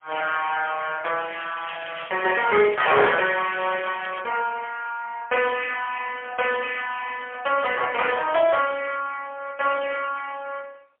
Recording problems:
phone line; 340 Hz to 3.3 kHz, AMR-NB, then MP3
crackling; from 1.5 to 4 s; loose cable, SNR 15 dB

